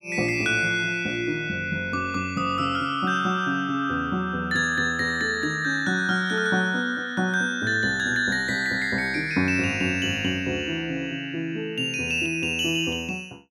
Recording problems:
none

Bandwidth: 16.5 kHz